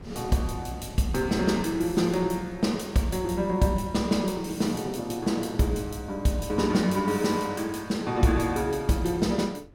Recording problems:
wind noise; below 270 Hz, SNR 20 dB

